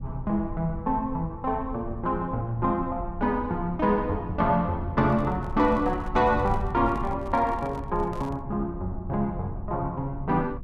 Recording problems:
low-frequency rumble; below 110 Hz, SNR 11 dB
handling noise; from 5 to 8.5 s; peak -10 dB vs average level

